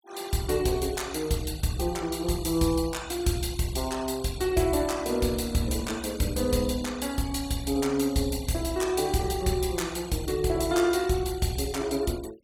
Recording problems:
denoising artefacts; signal-to-artefact ratio 19 dB

